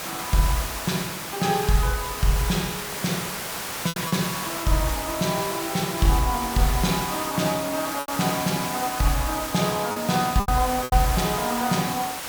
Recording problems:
background hiss; slope -2 dB per octave, SNR 5 dB
lost packets; 3% of the sound replaced, filled with repeated pitch periods

